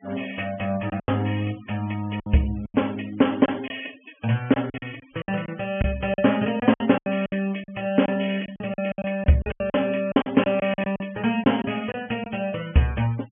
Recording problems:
treble missing; nothing above 3.2 kHz
noise reduction artefacts; signal-to-artefact ratio 22 dB
lost packets; 11% of the sound replaced, filled with silence

